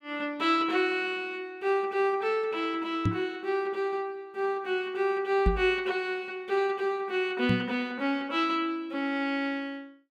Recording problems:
microphone bump; at 3 s, at 5.5 s and at 7.5 s; peak +6 dB vs average level

